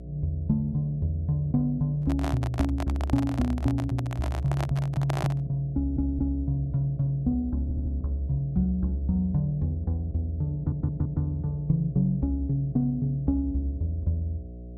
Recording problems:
hum; 60 Hz, harmonics up to 660 Hz, SNR 14 dB
handling noise; from 2 to 5.5 s; peak -1 dB vs average level
audio stuttering; at 6 s, at 7.5 s and at 11 s

